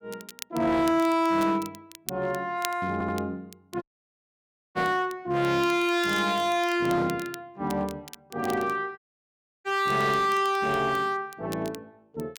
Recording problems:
distortion; hard clipping, signal-to-distortion ratio 11 dB
crackle; vinyl, SNR 18 dB
audio stuttering; at 3 s
audio cutting out; at 4 s for 1 s and at 9 s for 0.5 s

